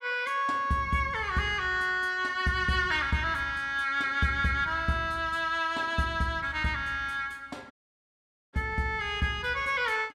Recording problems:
audio cutting out; at 7.5 s for 1 s

